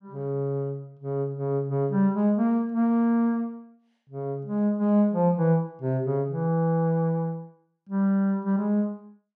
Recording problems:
none

